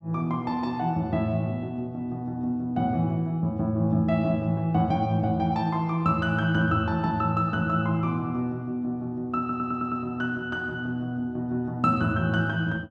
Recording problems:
stutter; at 9.5 s

